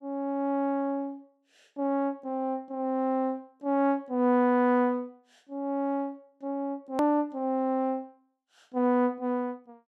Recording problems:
edit click; at 7 s

